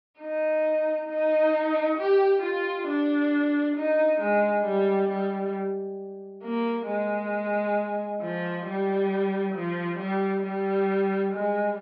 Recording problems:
treble cut off; nothing above 5.5 kHz

